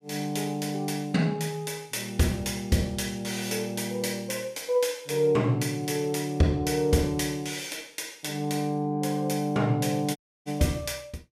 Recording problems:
dropout; at 10 s

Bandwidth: 15.5 kHz